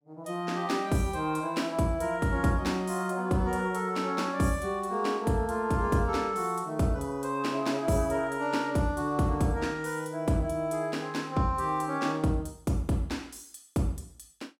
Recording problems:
none

